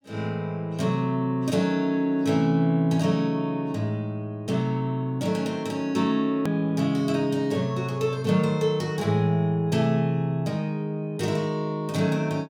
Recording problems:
hard cut with a click; at 6.5 s

